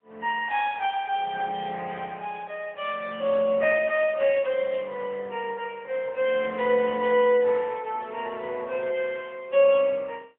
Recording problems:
phone line; 260 Hz to 3.4 kHz, AMR-NB, then MP3

